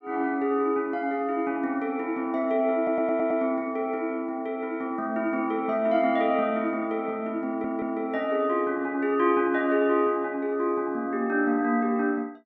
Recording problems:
stutter; at 3 s and at 7.5 s

